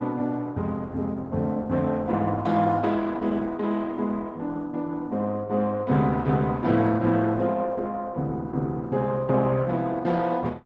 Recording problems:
codec artefacts; Opus, log-spectral distance 2 dB

